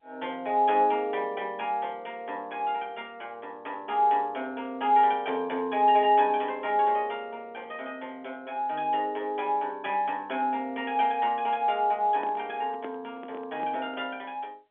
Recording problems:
phone line; 280 Hz to 3.5 kHz, G.711
handling noise; from 12 to 14 s; peak -10 dB vs average level

